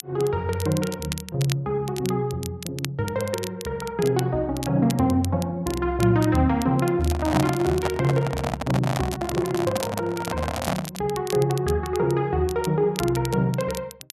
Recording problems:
crackle; vinyl, SNR 14 dB
handling noise; from 7 to 11 s; peak +4 dB vs average level

